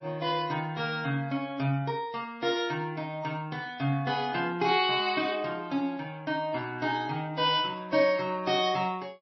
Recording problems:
codec artefacts; MP3, log-spectral distance 2 dB, nothing above 5.2 kHz

